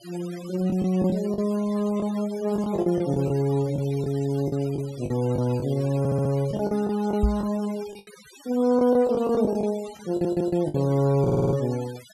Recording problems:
noise reduction artefacts; signal-to-artefact ratio 20 dB
lost packets; 10% of the sound replaced, filled with the last packet
stutter; at 6 s, at 10 s and at 11 s
microphone bump; at 7 s; peak +5 dB vs average level

